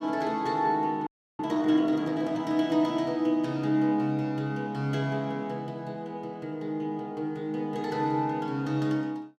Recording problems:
audio freezing; at 1 s

